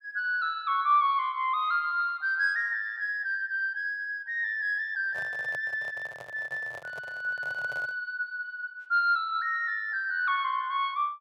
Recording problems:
microphone handling noise; from 5 to 8 s; peak -10 dB vs average level

